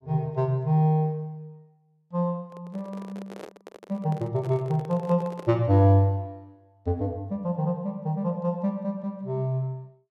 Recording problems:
handling noise; from 2.5 to 5.5 s; peak -10 dB vs average level

